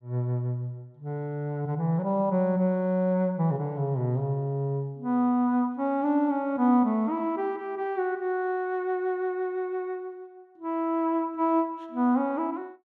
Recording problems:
none

